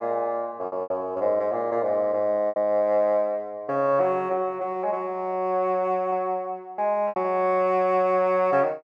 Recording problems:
packet loss; 4% of the sound replaced, filled with repeated pitch periods

